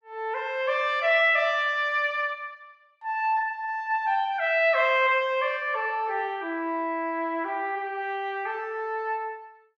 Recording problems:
none

